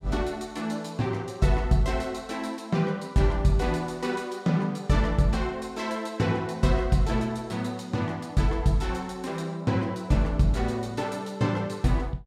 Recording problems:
none

